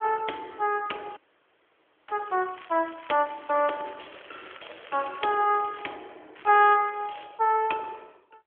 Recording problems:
telephone audio; 280 Hz to 3.4 kHz, AMR-NB
frozen audio; at 1 s for 1 s
crackle; from 2 to 6 s and at 6.5 s; loose cable, SNR 22 dB

